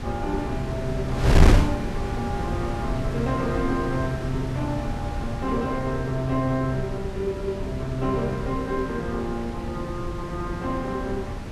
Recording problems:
wind on the microphone; below 240 Hz, SNR 0 dB

